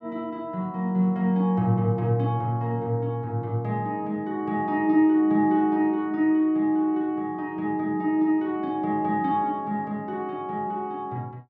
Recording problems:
none

